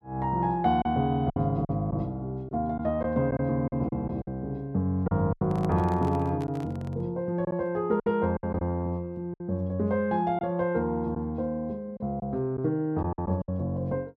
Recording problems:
lost packets; 7% of the sound replaced, filled with silence
handling noise; from 5.5 to 7 s; peak -6 dB vs average level

